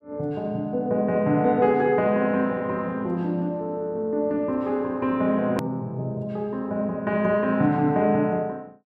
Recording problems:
hard cut with a click; at 5.5 s

